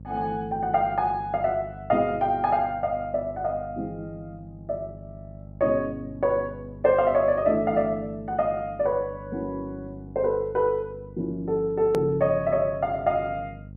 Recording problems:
hum; 50 Hz, harmonics up to 550 Hz, SNR 17 dB
click at an edit; at 12 s

